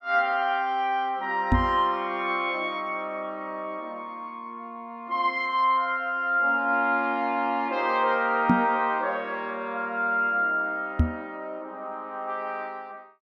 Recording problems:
microphone bump; at 1.5 s, at 8.5 s and at 11 s; peak +9 dB vs average level

